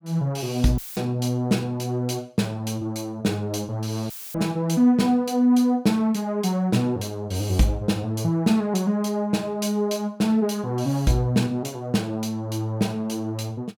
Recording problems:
dropout; at 1 s and at 4 s; filled with static

